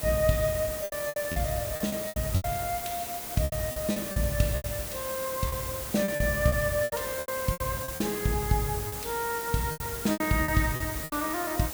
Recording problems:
hiss; slope -3 dB per octave, SNR 5 dB
lost packets; 13% of the sound replaced, filled with repeated pitch periods

